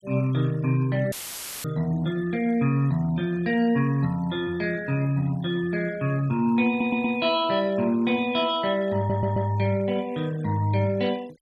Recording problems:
denoising artefacts; signal-to-artefact ratio 23 dB
dropout; at 1 s for 0.5 s; filled with static
stutter; at 6.5 s and at 9 s

